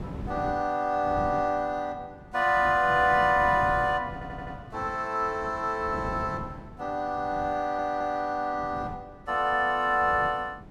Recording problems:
wind noise; below 310 Hz, SNR 15 dB
stutter; at 4 s and at 7.5 s

